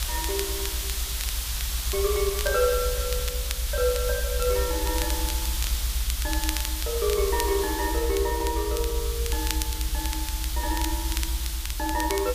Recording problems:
hiss; slope +2 dB per octave, SNR 2 dB
low-frequency rumble; below 64 Hz, strongest tone 56 Hz, SNR 2 dB
crackle; vinyl, SNR 9 dB

